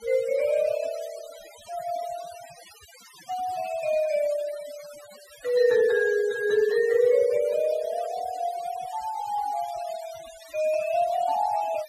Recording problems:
noise reduction artefacts; signal-to-artefact ratio 20 dB

